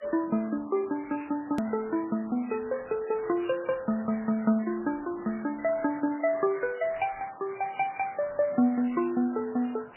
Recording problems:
codec artefacts; MP3, then MP3, log-spectral distance 11 dB, nothing above 2.4 kHz
hiss; SNR 18 dB
hard cut with a click; at 1.5 s

